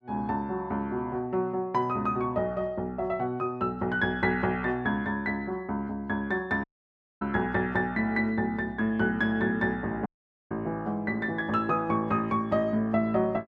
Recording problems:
dropout; at 6.5 s for 0.5 s and at 10 s

